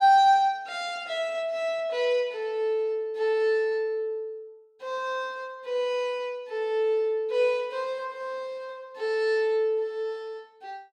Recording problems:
none

